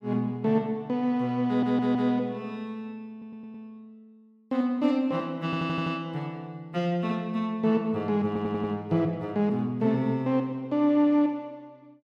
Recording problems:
audio stuttering; 4 times, first at 1.5 s

